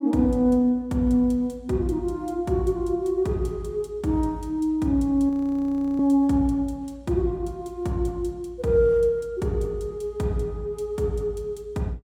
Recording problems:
frozen audio; at 5.5 s for 0.5 s

